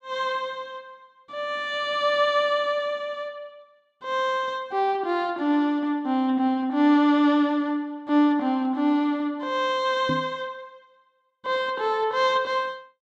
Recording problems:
microphone thump; at 10 s; peak -1 dB vs average level

